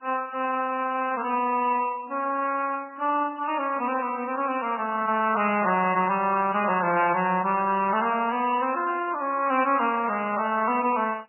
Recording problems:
lossy codec; Vorbis, then MP3, log-spectral distance 3 dB, nothing above 2.8 kHz

